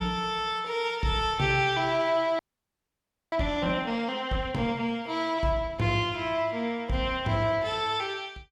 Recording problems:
audio freezing; at 2.5 s for 1 s

